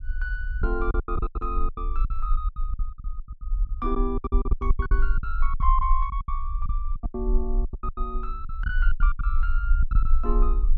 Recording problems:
low-frequency rumble; below 44 Hz, strongest tone 24 Hz, SNR -4 dB
packet loss; 21% of the sound replaced, filled with silence

